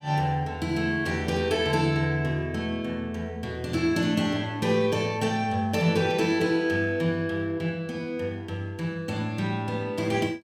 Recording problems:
none

